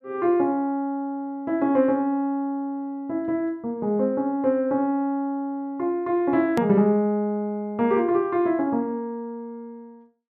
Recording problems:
click at an edit; at 6.5 s

